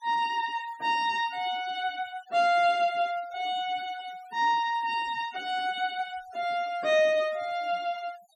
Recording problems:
noise reduction artefacts; signal-to-artefact ratio 23 dB

